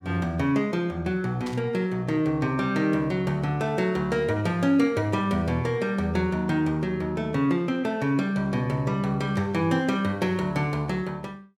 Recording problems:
static burst; at 1.5 s; peak -10 dB vs average level

